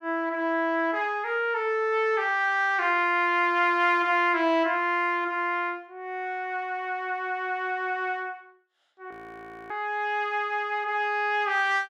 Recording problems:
audio freezing; at 9 s for 0.5 s

